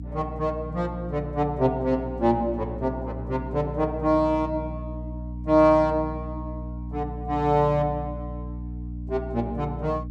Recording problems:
hum; 60 Hz, harmonics up to 300 Hz, SNR 10 dB

